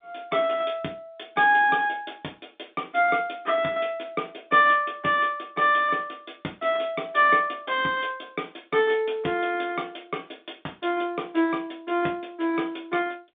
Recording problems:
telephone audio; 220 Hz to 3.6 kHz, G.711

